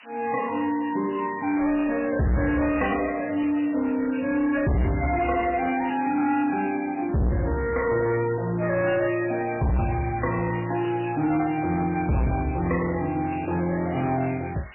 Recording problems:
codec artefacts; MP3, log-spectral distance 17 dB, nothing above 2.6 kHz
distorted audio; hard clipping, signal-to-distortion ratio 6 dB
background hiss; SNR 21 dB

